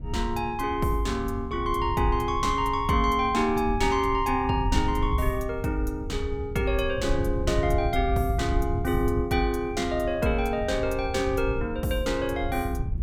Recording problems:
wind on the microphone; below 98 Hz, SNR 7 dB

